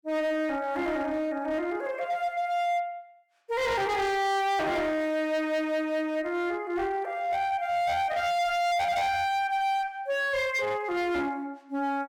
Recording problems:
distorted audio; hard clipping, signal-to-distortion ratio 7 dB

